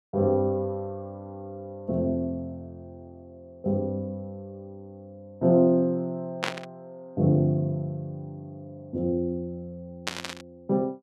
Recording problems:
burst of static; at 6.5 s and at 10 s; peak +3 dB vs average level

